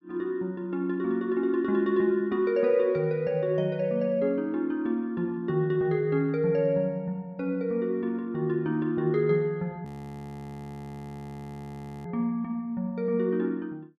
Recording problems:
frozen audio; at 10 s for 2 s

